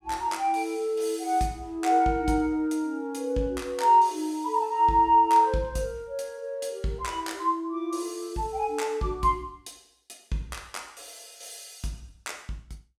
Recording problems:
none

